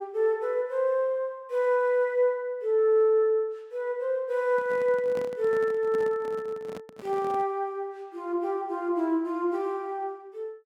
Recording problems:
handling noise; from 4.5 to 7.5 s; peak -8 dB vs average level

